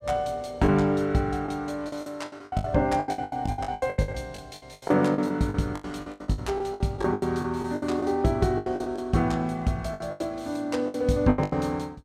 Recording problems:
lost packets; 19% of the sound replaced, filled with the last packet

